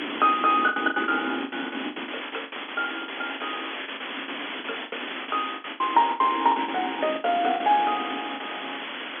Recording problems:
phone line; 240 Hz to 3.8 kHz, G.711
hiss; SNR 8 dB
wind on the microphone; below 370 Hz, SNR 14 dB
lost packets; 15% of the sound replaced, filled with the last packet

